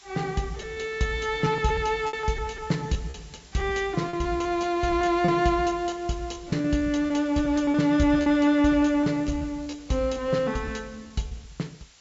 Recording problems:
low-pass filter; nothing above 8 kHz
background hiss; slope +2 dB per octave, SNR 25 dB
packet loss; 11% of the sound replaced, filled with repeated pitch periods

